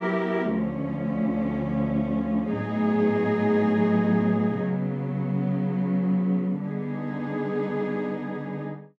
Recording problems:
none

